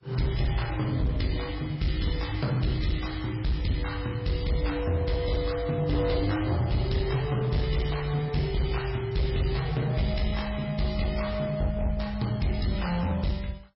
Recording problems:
codec artefacts; MP3, log-spectral distance 4 dB, nothing above 5.2 kHz
distorted audio; hard clipping, uneven, signal-to-distortion ratio 10 dB

